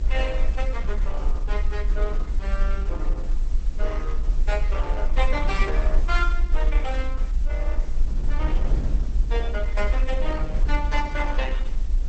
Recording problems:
lossy codec; Opus, log-spectral distance 2 dB, nothing above 8.2 kHz
hiss; slope -2 dB per octave, SNR 21 dB
low-frequency rumble; below 48 Hz, SNR -5 dB
wind on the microphone; below 210 Hz, SNR 7 dB

